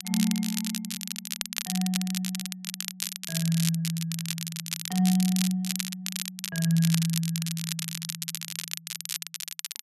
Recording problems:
crackling; vinyl, SNR 4 dB

